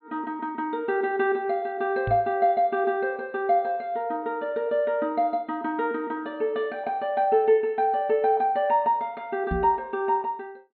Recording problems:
treble cut off; nothing above 4.3 kHz
microphone bump; at 2 s and at 9.5 s; peak -1 dB vs average level

